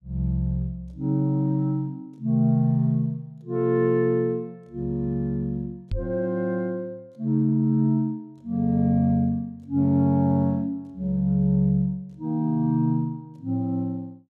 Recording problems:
microphone bump; at 6 s; peak -2 dB vs average level

